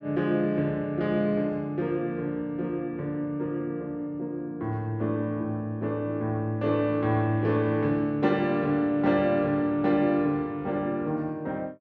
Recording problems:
none

